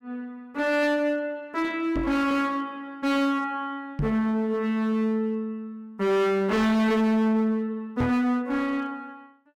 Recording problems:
distorted audio; hard clipping, uneven, signal-to-distortion ratio 5 dB
knock on the microphone; at 2 s, at 4 s and at 8 s; peak +1 dB vs average level

